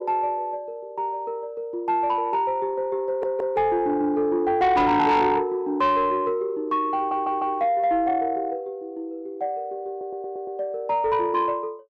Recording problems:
distorted audio; soft clipping, signal-to-distortion ratio 11 dB
audio stuttering; at 3 s, at 7 s and at 10 s

